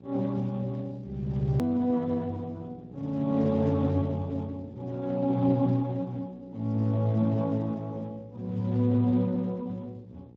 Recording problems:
codec artefacts; Speex, log-spectral distance 2 dB, nothing above 17.7 kHz
hum; 60 Hz, harmonics up to 900 Hz, SNR 21 dB
edit click; at 1.5 s

